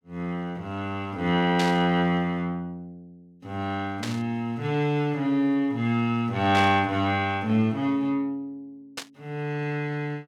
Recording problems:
static burst; 4 times, first at 1.5 s; peak -1 dB vs average level

